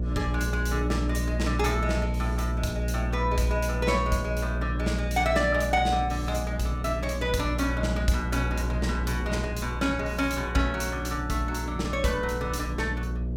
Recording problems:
hum; 60 Hz, harmonics up to 540 Hz, SNR 2 dB
wind noise; below 280 Hz, SNR 16 dB

